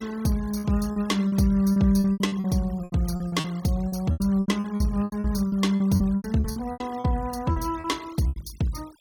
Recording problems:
denoising artefacts; signal-to-artefact ratio 23 dB
lost packets; 17% of the sound replaced, filled with repeated pitch periods

